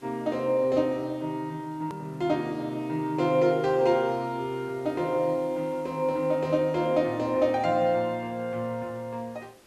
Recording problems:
background hiss; slope -4 dB per octave, SNR 29 dB
hard cut with a click; at 2 s

